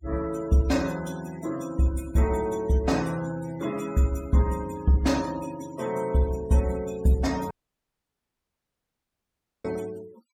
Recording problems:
noise reduction artefacts; signal-to-artefact ratio 19 dB
audio cutting out; at 7.5 s for 2 s

